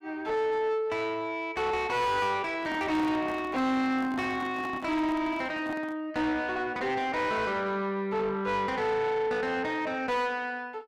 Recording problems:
distortion; soft clipping, signal-to-distortion ratio 7 dB
handling noise; from 2.5 to 6 s; peak -5 dB vs average level

